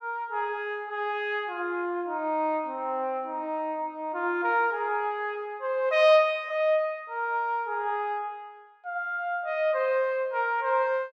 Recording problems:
none

